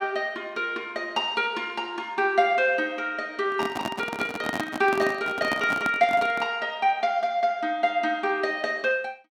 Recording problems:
handling noise; from 3.5 to 6.5 s; peak 0 dB vs average level

